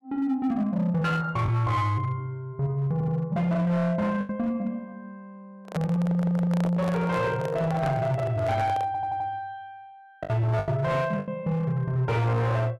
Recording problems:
distortion; hard clipping, signal-to-distortion ratio 11 dB
packet loss; 3% of the sound replaced, filled with the last packet
stutter; at 3 s, at 6 s and at 9 s
microphone handling noise; from 5.5 to 9.5 s; peak -3 dB vs average level

